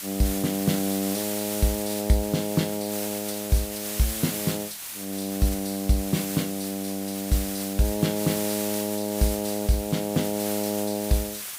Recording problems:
background hiss; slope +2 dB per octave, SNR 5 dB

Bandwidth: 15.5 kHz